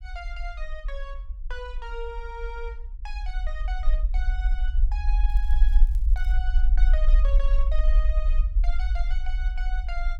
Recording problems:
low-frequency rumble; below 44 Hz, SNR -14 dB
crackling; from 5.5 to 6.5 s; loose cable, SNR 22 dB

